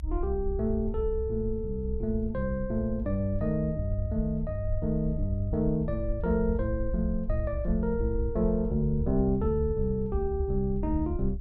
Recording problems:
low-frequency rumble; below 64 Hz, SNR 6 dB

